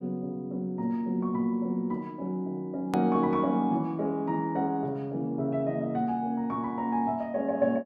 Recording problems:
hard cut with a click; at 3 s

